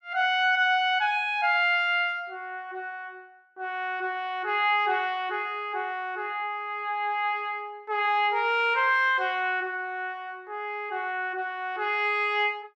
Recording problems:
none

